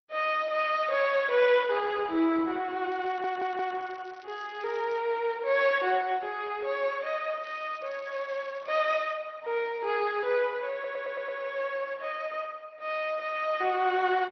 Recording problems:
codec artefacts; MP2, then Opus, log-spectral distance 4 dB
crackle; from 3 to 5 s and from 7.5 to 9 s; loose cable, SNR 29 dB
stutter; at 3 s and at 11 s

